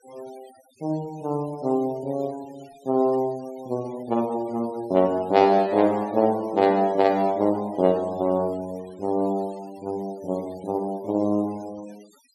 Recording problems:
denoising artefacts; signal-to-artefact ratio 25 dB

